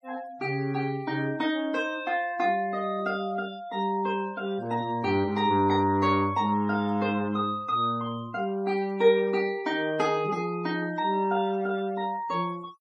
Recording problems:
noise reduction artefacts; signal-to-artefact ratio 24 dB

